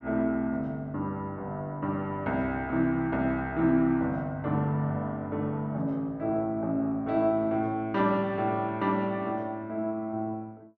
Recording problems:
none

